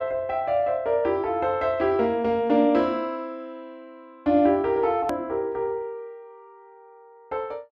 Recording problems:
click at an edit; at 5 s

